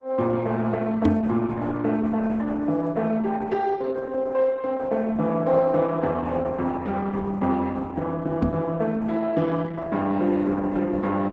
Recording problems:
lossy codec; Opus, log-spectral distance 3 dB
microphone bump; at 1 s and at 8.5 s; peak +6 dB vs average level

